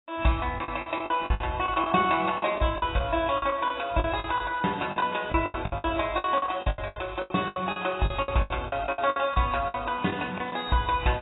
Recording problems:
lossy codec; AAC, log-spectral distance 6 dB, nothing above 3.8 kHz
packet loss; 17% of the sound replaced, filled with the last packet

